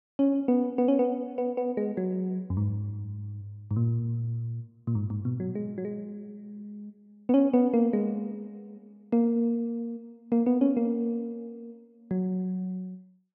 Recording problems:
none

